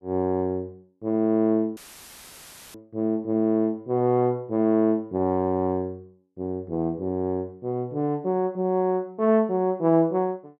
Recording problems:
dropout; at 2 s for 1 s; filled with static

